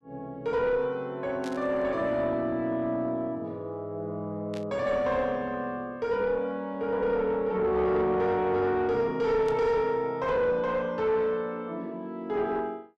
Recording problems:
distorted audio; soft clipping, signal-to-distortion ratio 11 dB
burst of static; at 1.5 s, at 4.5 s and at 9.5 s; peak -11 dB vs average level

